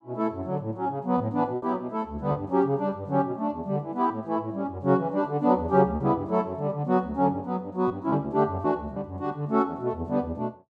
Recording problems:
packet loss; 2% of the sound replaced, filled with repeated pitch periods

